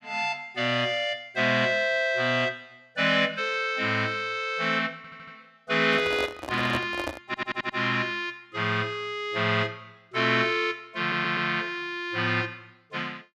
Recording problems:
audio stuttering; at 5 s, at 7.5 s and at 11 s
handling noise; from 6 to 7 s; peak -2 dB vs average level

